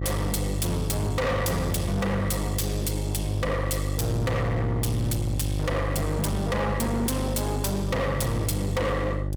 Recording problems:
distortion; hard clipping, signal-to-distortion ratio 5 dB
hum; 50 Hz, harmonics up to 600 Hz, SNR 2 dB

